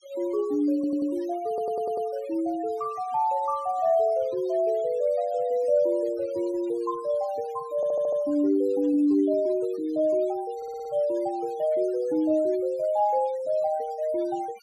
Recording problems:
noise reduction artefacts; signal-to-artefact ratio 25 dB
stutter; 4 times, first at 1 s

